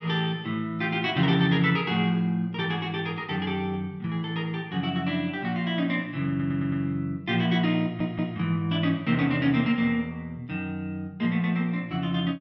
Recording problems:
low-pass filter; nothing above 8 kHz
audio stuttering; at 6.5 s and at 8 s

